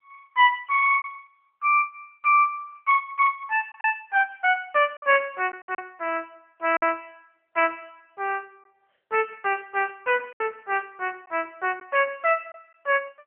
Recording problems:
phone line; 370 Hz to 3.1 kHz, AMR-NB
lost packets; 3% of the sound replaced, filled with silence

